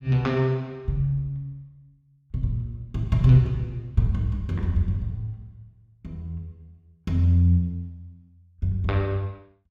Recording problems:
none

